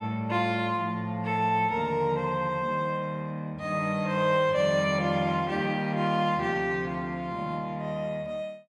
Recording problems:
none

